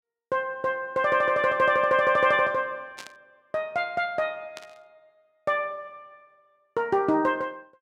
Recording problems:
burst of static; at 3 s and at 4.5 s; peak -11 dB vs average level

